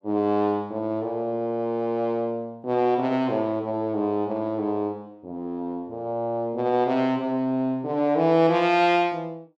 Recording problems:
none

